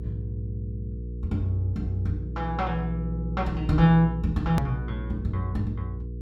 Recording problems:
hum; 60 Hz, harmonics up to 480 Hz, SNR 6 dB
hard cut with a click; at 4.5 s

